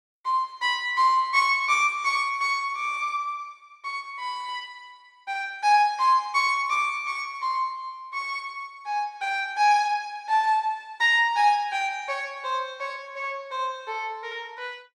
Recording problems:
none

